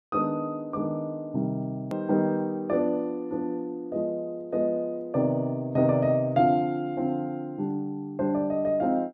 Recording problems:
hard cut with a click; at 2 s

